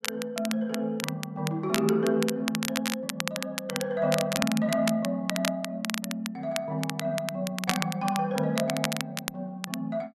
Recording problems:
crackling; vinyl, SNR 5 dB

